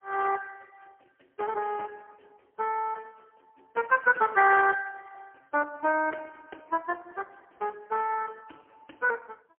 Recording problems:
phone line; 260 Hz to 2.7 kHz, AMR-NB, then MP3

